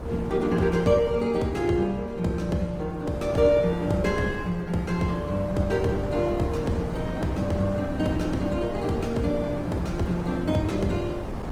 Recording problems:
lossy compression; Opus, log-spectral distance 2 dB, nothing above 19 kHz
wind noise; below 530 Hz, SNR 9 dB

